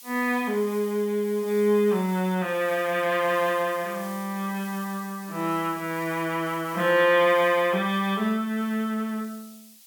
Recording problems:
background hiss; SNR 19 dB

